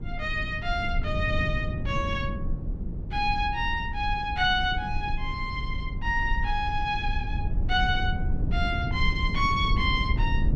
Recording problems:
low-frequency rumble; below 62 Hz, SNR 6 dB
wind on the microphone; below 180 Hz, SNR 6 dB

